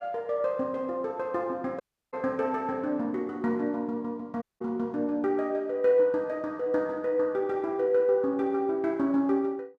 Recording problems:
audio cutting out; at 2 s and at 4.5 s

